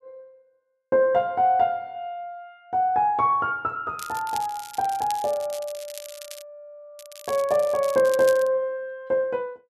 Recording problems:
crackling; from 4 to 6.5 s and from 7 to 8.5 s; loose cable, SNR 17 dB

